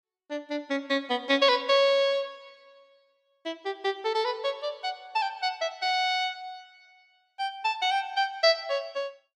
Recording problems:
none

